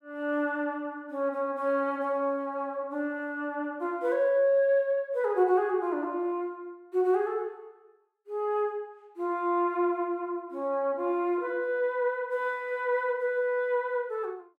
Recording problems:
none

